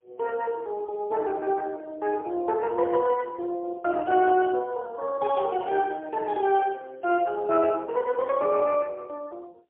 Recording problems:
telephone audio; 320 Hz to 2.9 kHz, AMR-NB, then MP3

